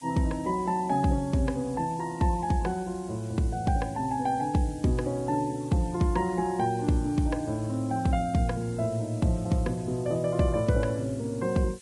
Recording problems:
codec artefacts; Vorbis, log-spectral distance 5 dB
hiss; slope +5 dB per octave, SNR 22 dB

